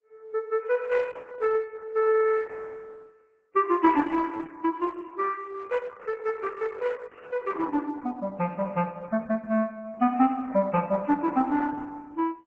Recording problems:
lossy codec; MP3, then Opus, log-spectral distance 4 dB, nothing above 7.6 kHz

